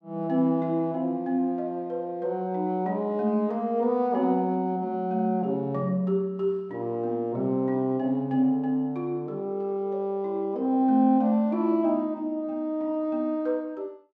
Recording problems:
none

